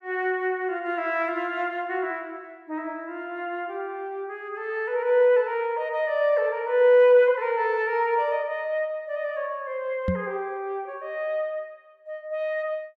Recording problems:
knock on the microphone; at 10 s; peak +2 dB vs average level

